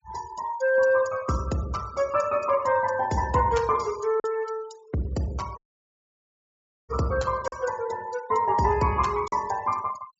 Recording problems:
low-pass filter; nothing above 8 kHz
noise reduction artefacts; signal-to-artefact ratio 20 dB
lost packets; 1.2% of the sound replaced, filled with silence
dropout; at 5.5 s for 1.5 s

